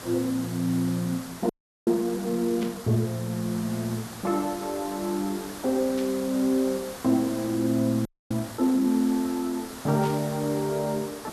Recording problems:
hiss; SNR 13 dB
frozen audio; at 1.5 s and at 8 s
static burst; at 2.5 s, at 6 s and at 10 s; peak -9 dB vs average level

